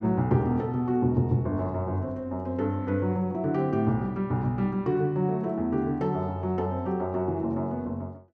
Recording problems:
none

